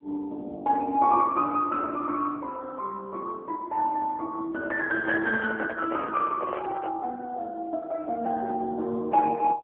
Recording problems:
telephone audio; 260 Hz to 3 kHz, AMR-NB
microphone handling noise; from 5 to 7 s; peak -2 dB vs average level

